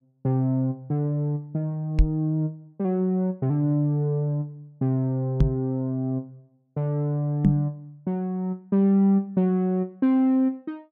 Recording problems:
microphone thump; at 2 s, at 5.5 s and at 7.5 s; peak +8 dB vs average level

